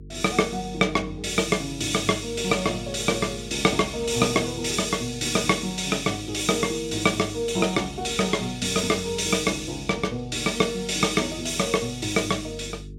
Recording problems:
electrical hum; 50 Hz, harmonics up to 450 Hz, SNR 19 dB

